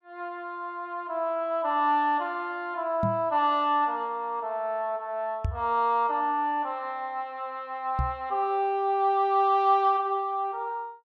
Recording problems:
microphone thump; at 3 s, at 5.5 s and at 8 s; peak +2 dB vs average level

